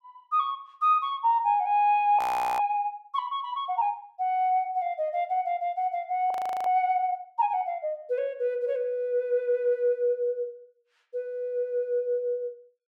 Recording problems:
frozen audio; at 2 s and at 6.5 s

